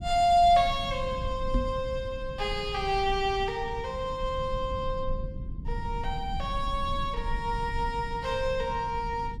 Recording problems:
low-frequency rumble; below 90 Hz, SNR 10 dB
microphone thump; at 1.5 s; peak +3 dB vs average level

